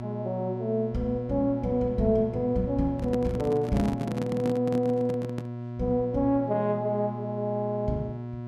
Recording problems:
electrical hum; 60 Hz, harmonics up to 1.3 kHz, SNR 8 dB
microphone handling noise; from 3 to 5.5 s; peak 0 dB vs average level

